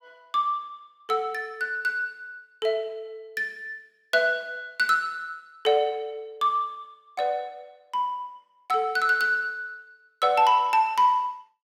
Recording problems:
none

